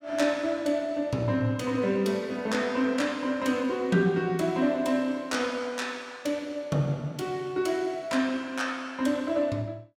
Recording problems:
none

